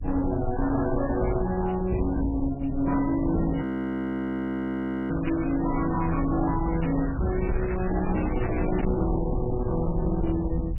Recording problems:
lossy compression; MP3, log-spectral distance 6 dB, nothing above 20.1 kHz
distortion; hard clipping, uneven, signal-to-distortion ratio 9 dB
rumble; below 96 Hz, SNR 7 dB
crackling; at 0.5 s, from 3.5 to 6 s and from 6.5 to 9 s; loose cable, SNR 13 dB
frozen audio; at 3.5 s for 1.5 s

